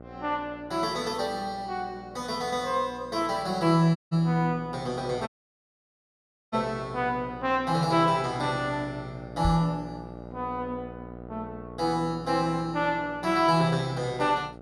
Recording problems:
hum; 60 Hz, harmonics up to 1.5 kHz, SNR 17 dB
audio cutting out; at 4 s and at 5.5 s for 1.5 s
microphone bump; at 9.5 s; peak +3 dB vs average level

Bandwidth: 14.5 kHz